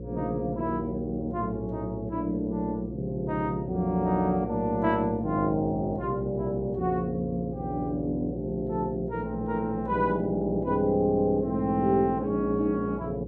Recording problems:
hum; 60 Hz, harmonics up to 540 Hz, SNR 11 dB

